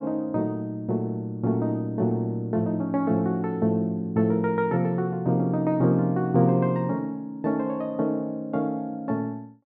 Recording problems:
none

